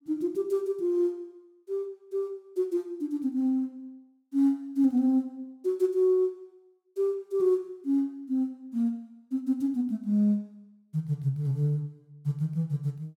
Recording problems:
none

